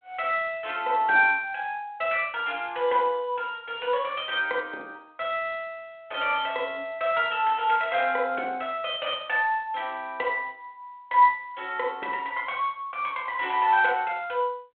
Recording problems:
telephone audio; 300 Hz to 3.5 kHz, G.726

